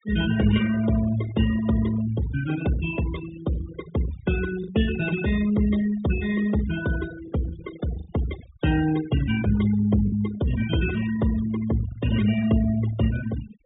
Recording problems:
low-pass filter; nothing above 4 kHz
denoising artefacts; signal-to-artefact ratio 13 dB
lost packets; 1.8% of the sound replaced, filled with the last packet

